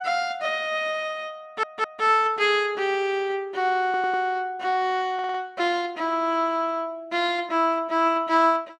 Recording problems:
stutter; at 1.5 s, at 4 s and at 5 s

